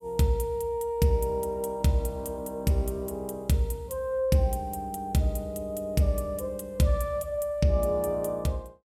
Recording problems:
none

